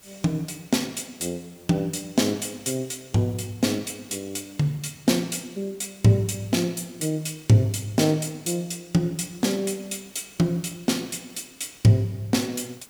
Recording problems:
hiss; slope -2 dB per octave, SNR 26 dB

